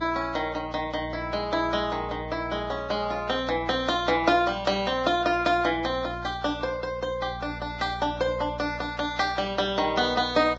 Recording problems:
codec artefacts; Vorbis, log-spectral distance 3 dB
hum; 60 Hz, harmonics up to 480 Hz, SNR 16 dB

